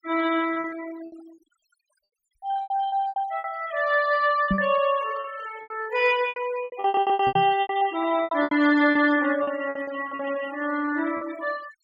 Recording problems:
denoising artefacts; signal-to-artefact ratio 18 dB
lost packets; 15% of the sound replaced, filled with repeated pitch periods
microphone bump; at 4.5 s and at 7.5 s; peak +3 dB vs average level
audio stuttering; at 7 s

